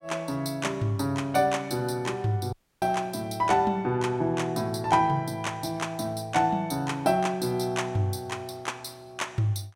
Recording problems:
audio cutting out; at 2.5 s

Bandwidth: 16.5 kHz